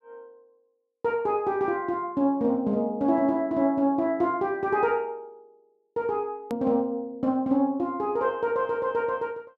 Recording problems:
edit click; at 6.5 s

